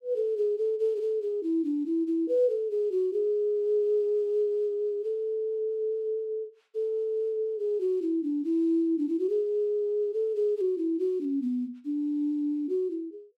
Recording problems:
none

